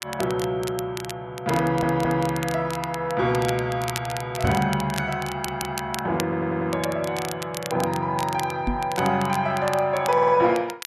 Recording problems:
crackle; vinyl, SNR 13 dB
audio stuttering; 4 times, first at 1.5 s
knock on the microphone; at 4.5 s and at 8.5 s; peak +2 dB vs average level

